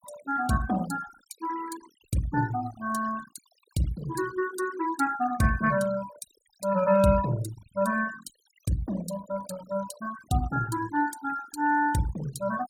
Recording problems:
noise reduction artefacts; signal-to-artefact ratio 17 dB

